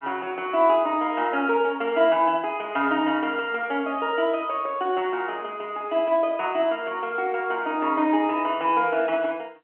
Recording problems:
telephone audio; 240 Hz to 3.2 kHz, G.711

